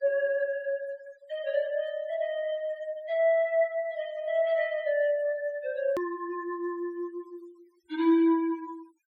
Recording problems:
noise reduction artefacts; signal-to-artefact ratio 26 dB
hard cut with a click; at 6 s

